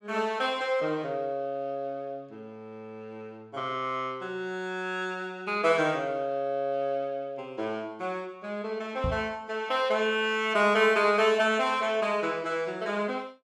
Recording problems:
microphone bump; at 9 s; peak 0 dB vs average level

